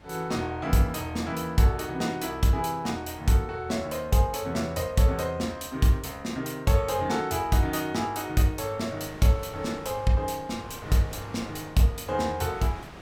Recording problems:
wind on the microphone; below 1.5 kHz, SNR 21 dB

